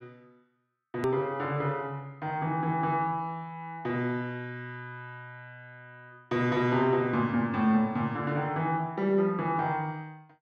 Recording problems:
click at an edit; at 1 s

